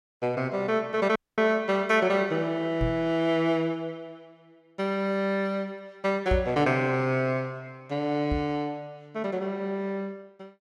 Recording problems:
audio cutting out; at 1 s
microphone bump; at 3 s, at 6.5 s and at 8.5 s; peak +2 dB vs average level

